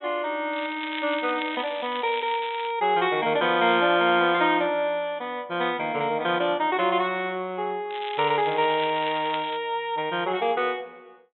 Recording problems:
treble missing; nothing above 3.8 kHz
crackle; from 0.5 to 2.5 s and from 8 to 9.5 s; loose cable, SNR 13 dB

